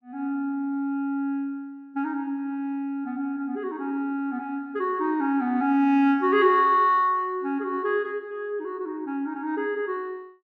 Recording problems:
none

